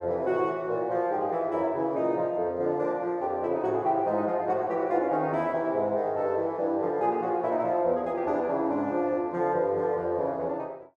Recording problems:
none

